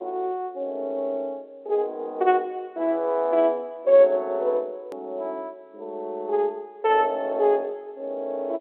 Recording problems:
telephone audio; 340 Hz to 3.9 kHz, G.711
edit click; at 5 s

